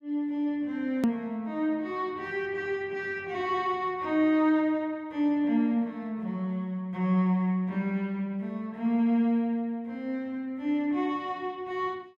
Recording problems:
hard cut with a click; at 1 s

